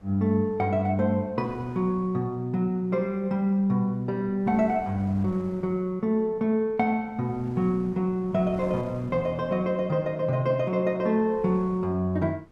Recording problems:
wind on the microphone; below 540 Hz, SNR 23 dB

